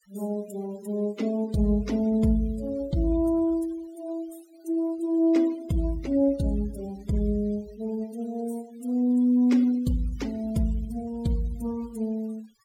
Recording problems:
noise reduction artefacts; signal-to-artefact ratio 23 dB

